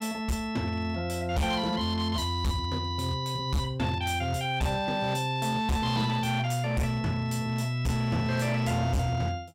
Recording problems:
distorted audio; hard clipping, signal-to-distortion ratio 8 dB

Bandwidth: 16.5 kHz